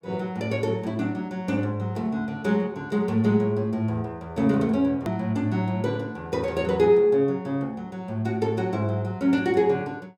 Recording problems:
edit click; at 5 s

